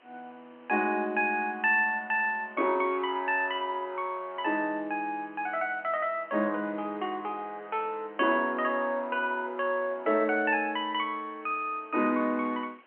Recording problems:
telephone audio; 220 Hz to 3.2 kHz, G.711
hiss; SNR 30 dB

